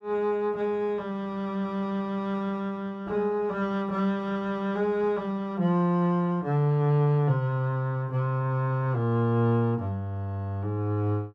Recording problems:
none

